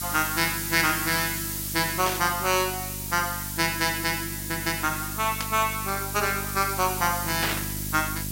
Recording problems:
electrical hum; 50 Hz, harmonics up to 650 Hz, SNR 11 dB
background hiss; slope +3 dB per octave, SNR 5 dB
static burst; at 2 s, at 5.5 s and at 7.5 s; peak +1 dB vs average level

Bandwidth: 16 kHz